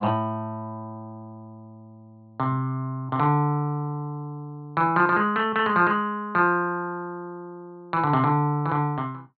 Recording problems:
treble cut off; nothing above 4.4 kHz

